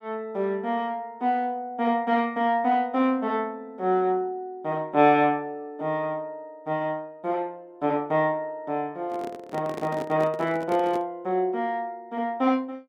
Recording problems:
microphone handling noise; from 9 to 11 s; peak -4 dB vs average level

